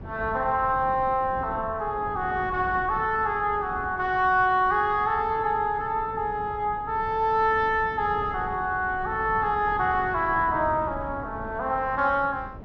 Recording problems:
treble cut off; nothing above 6.8 kHz
wind noise; below 340 Hz, SNR 16 dB

